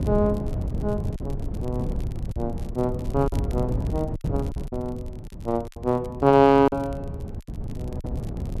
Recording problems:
wind on the microphone; below 170 Hz, SNR 7 dB
crackling; vinyl, SNR 29 dB
lost packets; 6% of the sound replaced, filled with silence

